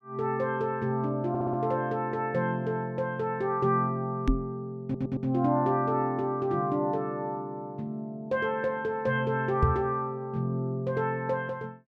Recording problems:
audio stuttering; at 1.5 s and at 5 s
microphone thump; at 4.5 s and at 9.5 s; peak +8 dB vs average level

